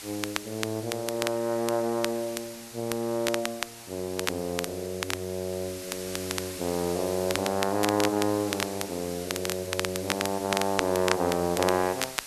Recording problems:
hiss; slope +1 dB per octave, SNR 11 dB
crackling; vinyl, SNR 5 dB

